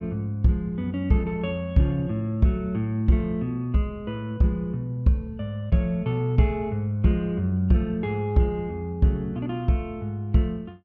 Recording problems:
none

